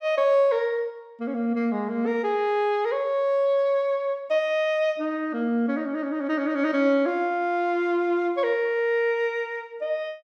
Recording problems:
none

